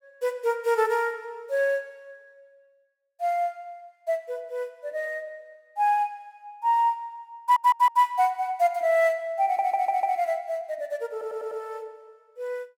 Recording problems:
stutter; at 7.5 s, at 9.5 s and at 11 s

